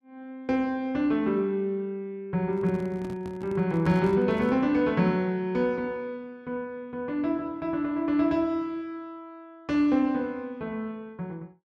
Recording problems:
handling noise; from 2.5 to 4.5 s; peak -6 dB vs average level

